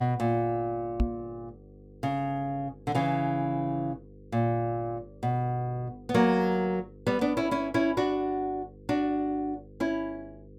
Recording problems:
hum; 50 Hz, harmonics up to 500 Hz, SNR 22 dB
microphone bump; at 1 s; peak +6 dB vs average level

